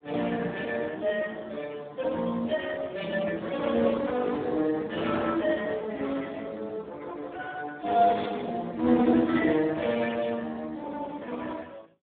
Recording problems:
telephone audio; 190 Hz to 3.5 kHz, Speex

